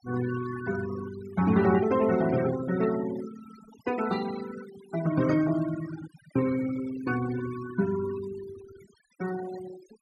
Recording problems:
noise reduction artefacts; signal-to-artefact ratio 13 dB

